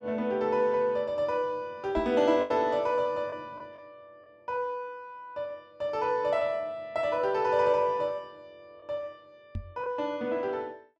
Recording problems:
packet loss; 1.9% of the sound replaced, filled with the last packet
microphone bump; at 2 s and at 9.5 s; peak -3 dB vs average level

